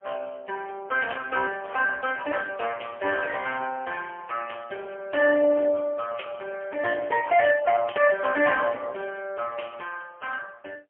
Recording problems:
phone line; 320 Hz to 3 kHz, AMR-NB, then MP3

